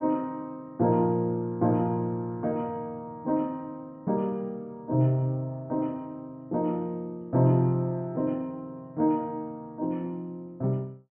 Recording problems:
treble cut off; nothing above 3.3 kHz

